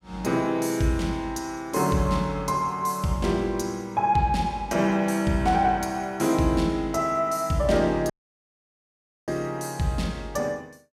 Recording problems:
dropout; at 8 s for 1 s

